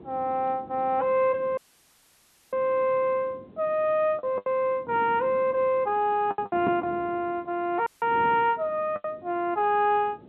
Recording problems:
telephone audio; 220 Hz to 3.7 kHz, G.711
wind on the microphone; below 430 Hz, SNR 19 dB
lost packets; 4% of the sound replaced, filled with the last packet
audio cutting out; at 1.5 s for 1 s and at 8 s

